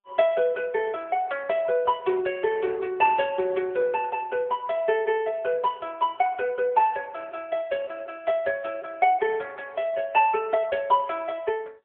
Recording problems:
phone line; 340 Hz to 3.4 kHz, AMR-NB

